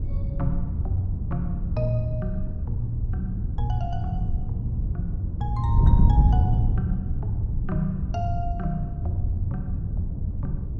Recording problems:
wind noise; below 110 Hz, SNR -5 dB

